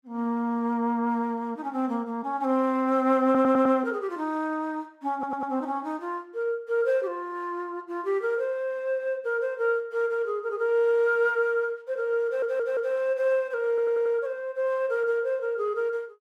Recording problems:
audio stuttering; 4 times, first at 3.5 s

